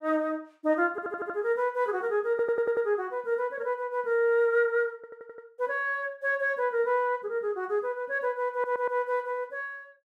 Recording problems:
stutter; 4 times, first at 1 s

